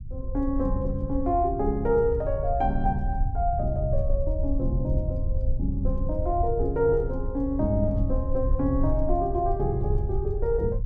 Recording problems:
low-frequency rumble; below 74 Hz, SNR 3 dB

